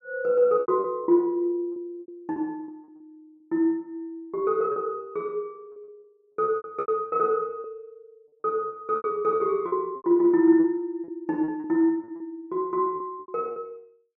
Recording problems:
packet loss; 12% of the sound replaced, filled with repeated pitch periods

